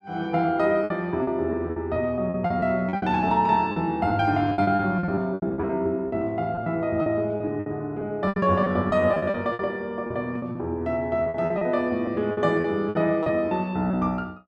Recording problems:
lost packets; 14% of the sound replaced, filled with repeated pitch periods

